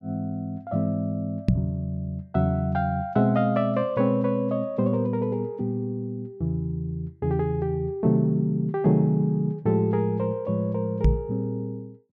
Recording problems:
microphone thump; at 1.5 s and at 11 s; peak +8 dB vs average level

